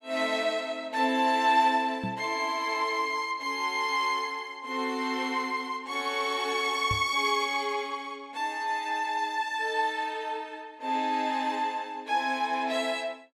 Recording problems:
microphone bump; at 2 s and at 7 s; peak -2 dB vs average level

